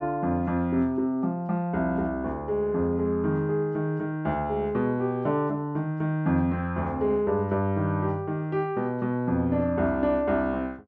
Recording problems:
none

